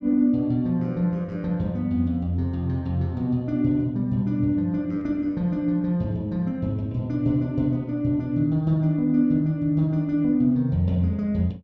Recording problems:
none

